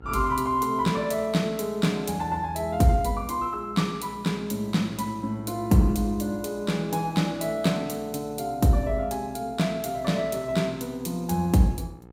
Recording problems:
hum; 60 Hz, harmonics up to 1.4 kHz, SNR 23 dB

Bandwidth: 16 kHz